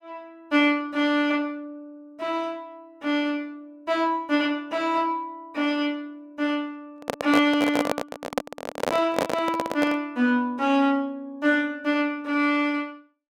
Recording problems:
microphone handling noise; from 7 to 10 s; peak +4 dB vs average level

